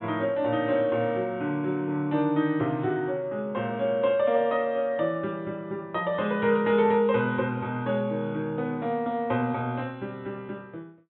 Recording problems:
low-pass filter; nothing above 3.8 kHz

